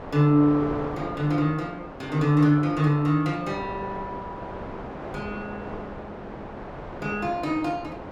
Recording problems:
wind on the microphone; below 950 Hz, SNR 13 dB

